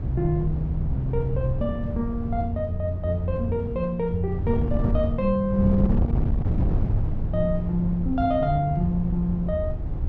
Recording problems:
wind on the microphone; below 130 Hz, SNR 2 dB

